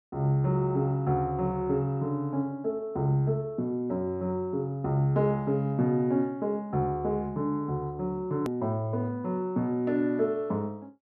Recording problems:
hard cut with a click; at 8.5 s

